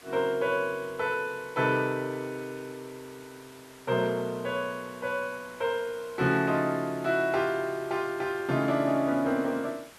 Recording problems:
background hiss; slope -2 dB per octave, SNR 21 dB

